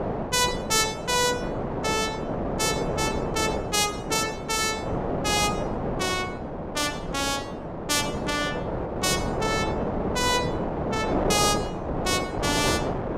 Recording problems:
wind noise; below 720 Hz, SNR 3 dB

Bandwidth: 15.5 kHz